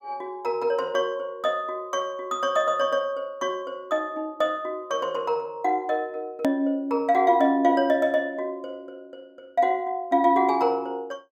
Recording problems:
edit click; at 6.5 s

